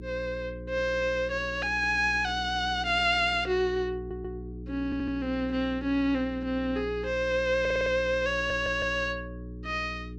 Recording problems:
electrical hum; 60 Hz, harmonics up to 420 Hz, SNR 13 dB
audio stuttering; 4 times, first at 4 s

